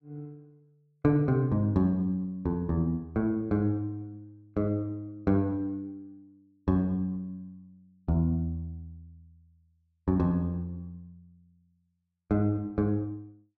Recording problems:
none

